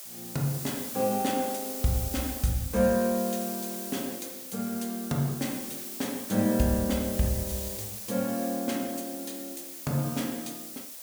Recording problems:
hiss; SNR 6 dB

